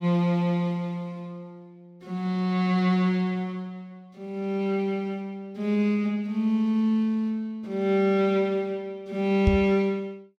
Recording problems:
knock on the microphone; at 9.5 s; peak +6 dB vs average level

